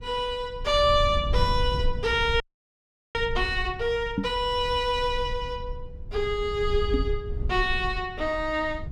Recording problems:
rumble; below 76 Hz, SNR 8 dB
frozen audio; at 2.5 s for 1 s
microphone bump; at 4 s and at 7 s; peak +3 dB vs average level

